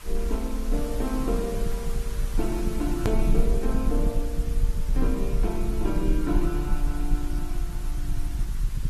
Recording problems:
lossy codec; Opus, log-spectral distance 2 dB
hiss; SNR 12 dB
rumble; below 44 Hz, SNR -1 dB
hard cut with a click; at 3 s

